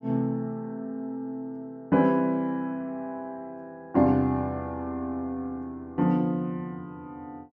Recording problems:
none

